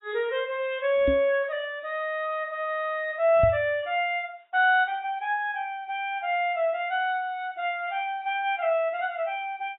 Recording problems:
codec artefacts; AAC, log-spectral distance 2 dB, nothing above 3.2 kHz
knock on the microphone; at 1 s and at 3.5 s; peak +2 dB vs average level

